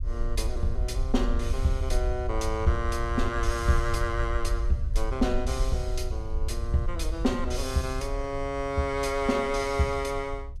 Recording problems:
rumble; below 62 Hz, SNR 3 dB

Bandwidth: 14.5 kHz